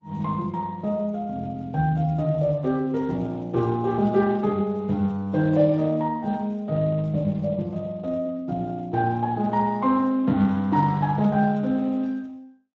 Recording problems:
lossy compression; Opus, then Speex, log-spectral distance 2 dB

